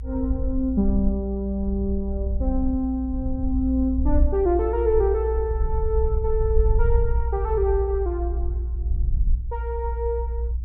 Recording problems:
low-frequency rumble; below 60 Hz, SNR 1 dB

